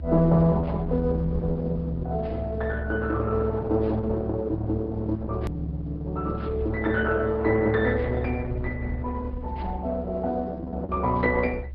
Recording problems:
treble cut off; nothing above 5.5 kHz
lossy compression; Opus, log-spectral distance 2 dB
rumble; below 72 Hz, strongest tone 70 Hz, SNR 8 dB
click at an edit; at 5.5 s

